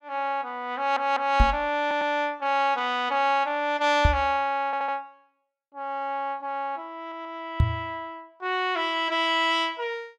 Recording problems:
stutter; 4 times, first at 1 s
knock on the microphone; at 1.5 s, at 4 s and at 7.5 s; peak +8 dB vs average level

